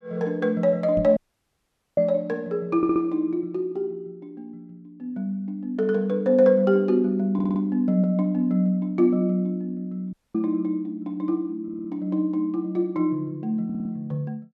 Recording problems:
microphone thump; at 1 s; peak -3 dB vs average level
audio cutting out; at 1 s for 1 s and at 10 s
audio stuttering; 4 times, first at 3 s

